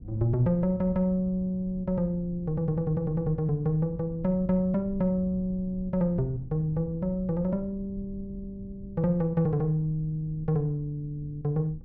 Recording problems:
low-frequency rumble; below 120 Hz, SNR 16 dB

